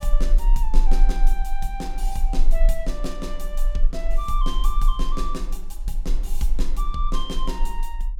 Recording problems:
rumble; below 32 Hz, strongest tone 18 Hz, SNR -6 dB

